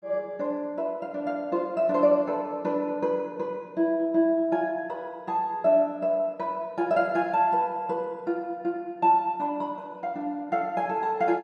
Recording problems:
none

